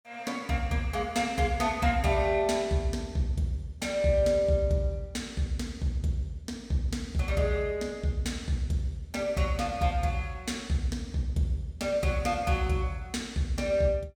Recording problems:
none

